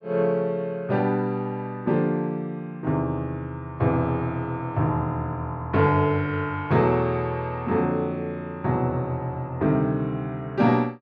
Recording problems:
none

